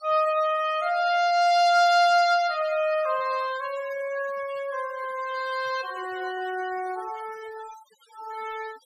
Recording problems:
noise reduction artefacts; signal-to-artefact ratio 18 dB

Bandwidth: 15 kHz